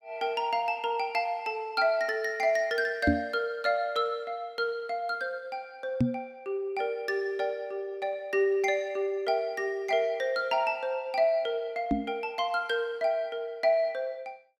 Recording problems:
knock on the microphone; at 3 s, at 6 s and at 12 s; peak +8 dB vs average level

